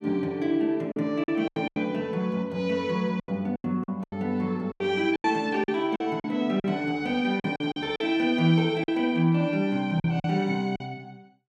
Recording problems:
packet loss; 10% of the sound replaced, filled with silence

